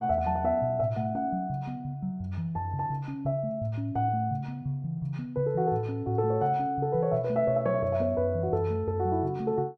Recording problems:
none

